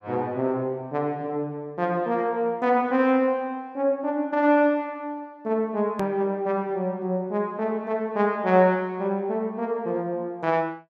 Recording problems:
edit click; at 6 s

